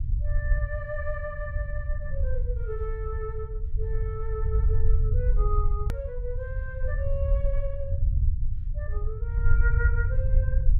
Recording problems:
rumble; below 72 Hz, SNR -8 dB
click at an edit; at 6 s

